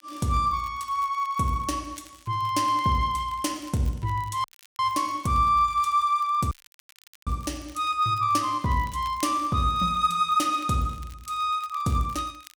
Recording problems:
crackle; vinyl, SNR 27 dB
audio cutting out; at 4.5 s and at 6.5 s for 1 s

